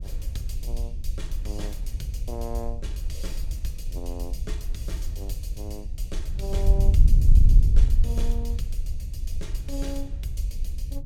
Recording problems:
wind noise; below 58 Hz, SNR -12 dB

